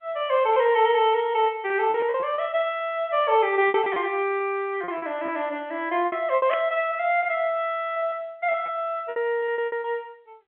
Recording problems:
telephone audio; 300 Hz to 3.3 kHz, G.711
packet loss; 9% of the sound replaced, filled with repeated pitch periods
burst of static; at 6.5 s; peak -3 dB vs average level

